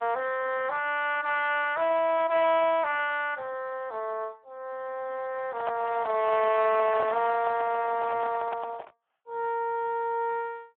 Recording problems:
telephone audio; 370 Hz to 3.5 kHz, Speex
microphone handling noise; from 5.5 to 9 s; peak -3 dB vs average level

